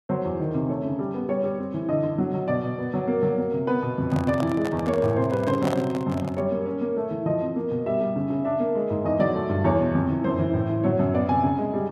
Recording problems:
handling noise; from 4 to 6.5 s; peak -2 dB vs average level

